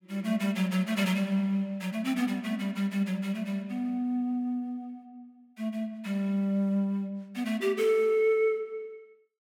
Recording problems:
none

